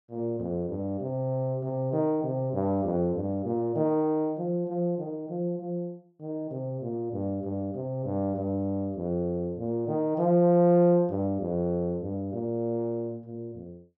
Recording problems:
none

